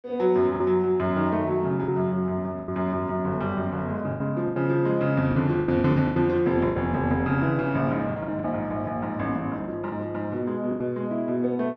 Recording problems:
lost packets; 8% of the sound replaced, filled with the last packet

